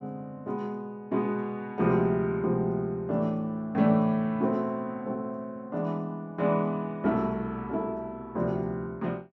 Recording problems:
none

